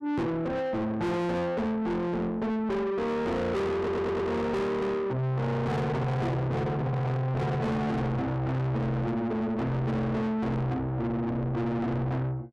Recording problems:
distortion; soft clipping, signal-to-distortion ratio 6 dB
audio stuttering; at 4 s

